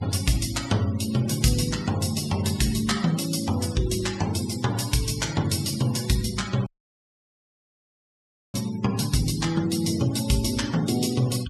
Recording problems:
noise reduction artefacts; signal-to-artefact ratio 15 dB
dropout; at 6.5 s for 2 s

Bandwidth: 14.5 kHz